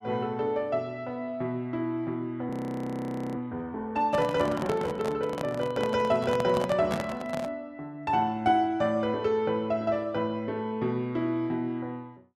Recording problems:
audio freezing; at 2.5 s for 1 s
microphone handling noise; from 4 to 7.5 s; peak +1 dB vs average level

